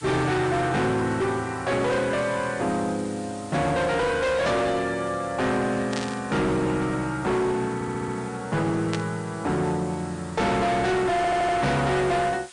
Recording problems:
lossy compression; MP3, log-spectral distance 9 dB, nothing above 8.5 kHz
distortion; hard clipping, uneven, signal-to-distortion ratio 7 dB
hiss; SNR 21 dB
burst of static; at 6 s and at 9 s; peak -2 dB vs average level
audio stuttering; at 8 s and at 11 s

